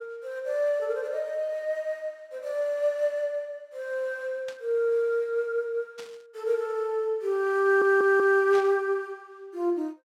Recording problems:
static burst; at 4.5 s, at 6 s and at 8.5 s; peak -11 dB vs average level
audio stuttering; at 7.5 s

